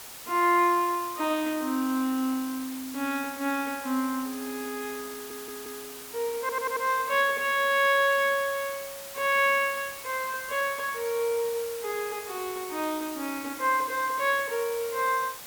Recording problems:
background hiss; slope 0 dB per octave, SNR 12 dB
audio stuttering; at 5 s and at 6.5 s

